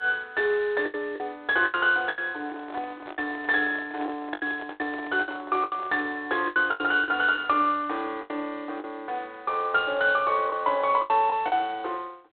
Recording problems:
phone line; 320 Hz to 3.6 kHz, G.726
lost packets; 10% of the sound replaced, filled with the last packet
microphone handling noise; from 2.5 to 6 s; peak -9 dB vs average level

